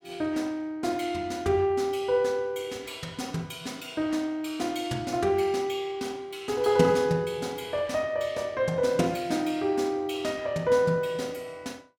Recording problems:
none

